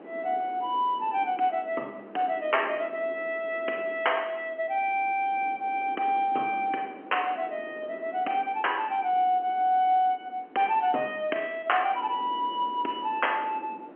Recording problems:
phone line; 260 Hz to 3.2 kHz, G.711
wind noise; below 620 Hz, SNR 19 dB

